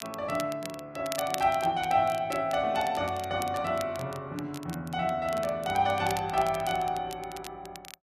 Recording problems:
crackle; vinyl, SNR 15 dB

